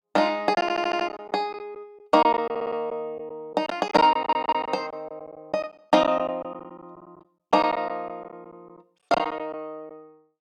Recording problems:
lost packets; 10% of the sound replaced, filled with silence
audio stuttering; at 0.5 s, at 2.5 s and at 4 s

